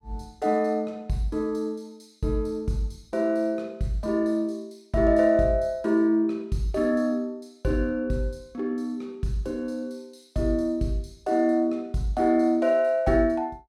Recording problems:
none

